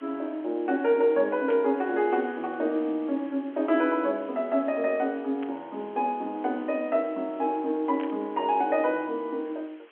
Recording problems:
telephone audio; 240 Hz to 3.4 kHz, G.711
hiss; SNR 28 dB
burst of static; at 1.5 s, at 5.5 s and at 8 s; peak -12 dB vs average level

